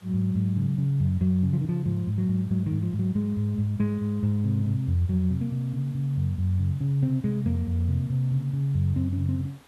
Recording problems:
background hiss; SNR 29 dB

